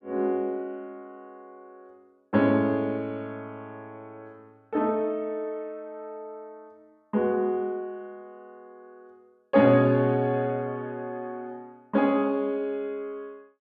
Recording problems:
none

